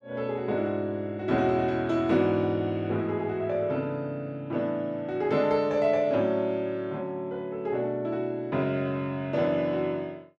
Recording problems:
none

